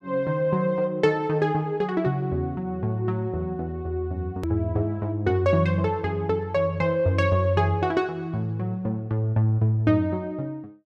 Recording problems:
hard cut with a click; at 4.5 s

